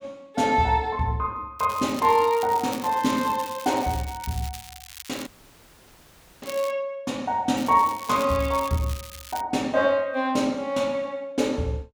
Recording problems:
crackling; from 1.5 to 6.5 s and from 7.5 to 9.5 s; loose cable, SNR 16 dB
audio cutting out; at 5.5 s for 1 s

